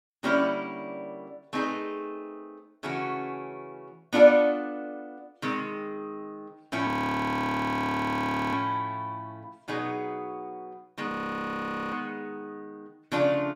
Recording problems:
audio freezing; at 7 s for 1.5 s and at 11 s for 1 s

